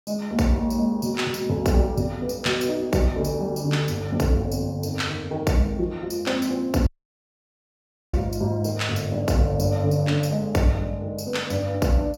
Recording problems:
dropout; at 7 s for 1.5 s

